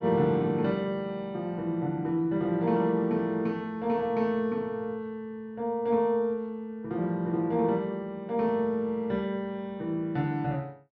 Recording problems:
treble missing; nothing above 6.4 kHz

